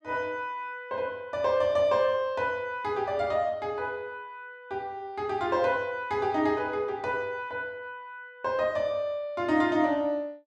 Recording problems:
none

